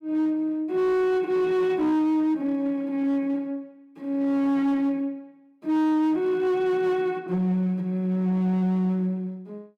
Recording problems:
distorted audio; hard clipping, signal-to-distortion ratio 12 dB

